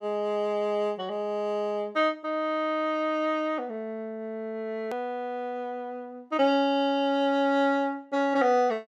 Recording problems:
click at an edit; at 5 s

